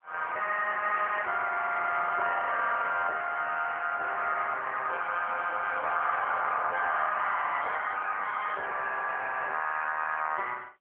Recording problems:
phone line; 430 Hz to 3.1 kHz, AMR-NB

